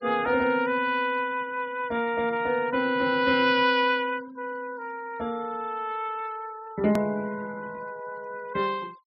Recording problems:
treble missing; nothing above 5.5 kHz
noise reduction artefacts; signal-to-artefact ratio 24 dB
click at an edit; at 7 s

